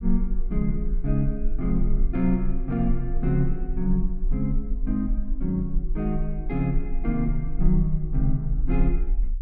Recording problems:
low-frequency rumble; below 38 Hz, strongest tone 18 Hz, SNR 3 dB

